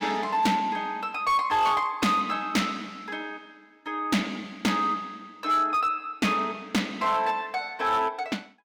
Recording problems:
distorted audio; hard clipping, signal-to-distortion ratio 11 dB

